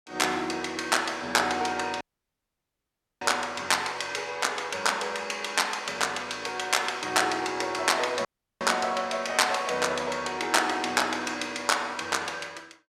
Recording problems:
dropout; at 2 s for 1 s and at 8.5 s

